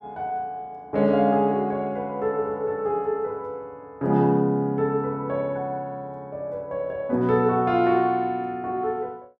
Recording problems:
none

